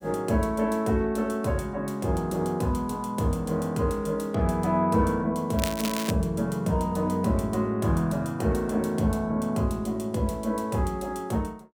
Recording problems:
crackling; at 5.5 s; loose cable, SNR 7 dB

